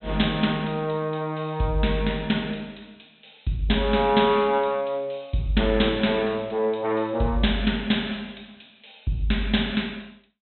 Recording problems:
treble missing; nothing above 4 kHz

